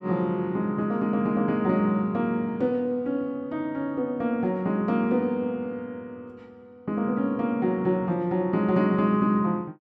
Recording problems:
none

